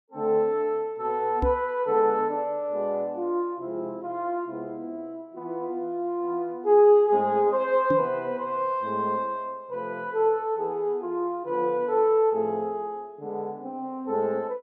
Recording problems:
knock on the microphone; at 1.5 s and at 8 s; peak +1 dB vs average level

